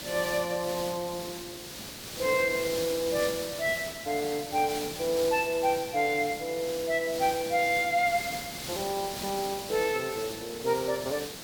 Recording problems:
hiss; SNR 8 dB

